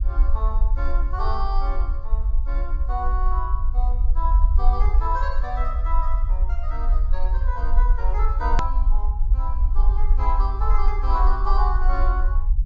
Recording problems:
treble missing; nothing above 7.6 kHz
rumble; below 48 Hz, SNR -7 dB
edit click; at 8.5 s

